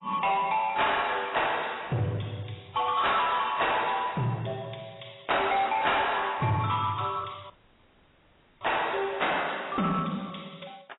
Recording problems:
codec artefacts; AAC, log-spectral distance 10 dB, nothing above 3.8 kHz
distortion; soft clipping, signal-to-distortion ratio 11 dB
audio cutting out; at 7.5 s for 1 s

